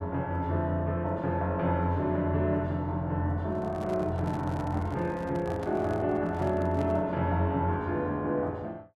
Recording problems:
microphone handling noise; from 3.5 to 7 s; peak -8 dB vs average level

